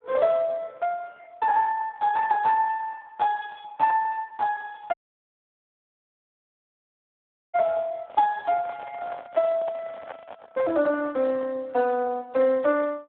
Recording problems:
telephone audio; 260 Hz to 2.6 kHz, Speex
audio cutting out; at 5 s for 2.5 s
handling noise; from 8 to 12 s; peak -8 dB vs average level

